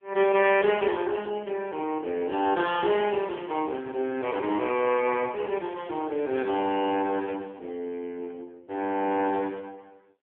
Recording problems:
phone line; 260 Hz to 3.3 kHz, AMR-NB

